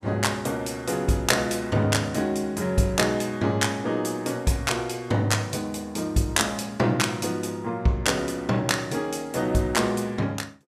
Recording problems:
none

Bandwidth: 14.5 kHz